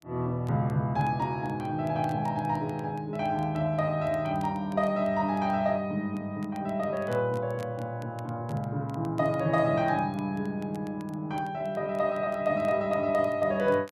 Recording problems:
crackle; vinyl, SNR 29 dB

